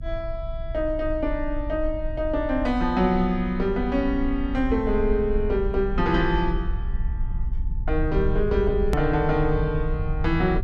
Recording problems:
low-frequency rumble; below 60 Hz, strongest tone 24 Hz, SNR 6 dB
click at an edit; at 9 s

